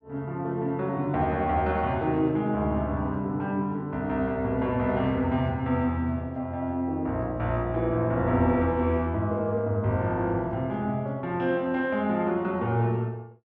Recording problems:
low-pass filter; nothing above 8 kHz

